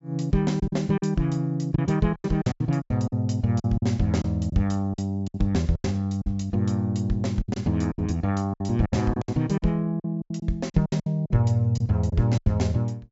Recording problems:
treble cut off; nothing above 8 kHz
lost packets; 12% of the sound replaced, filled with silence

